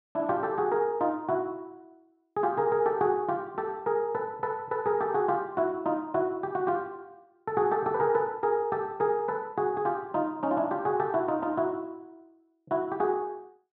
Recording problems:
low-pass filter; nothing above 6.1 kHz

